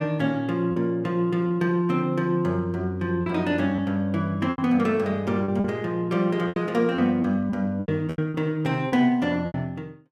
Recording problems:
packet loss; 7% of the sound replaced, filled with repeated pitch periods

